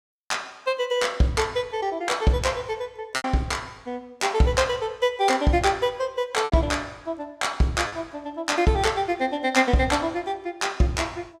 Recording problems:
packet loss; 1.9% of the sound replaced, filled with repeated pitch periods

